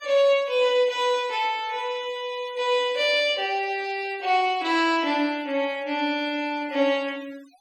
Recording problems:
denoising artefacts; signal-to-artefact ratio 24 dB

